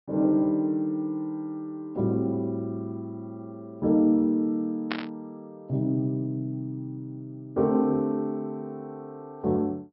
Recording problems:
treble cut off; nothing above 5.3 kHz
burst of static; at 5 s; peak +1 dB vs average level

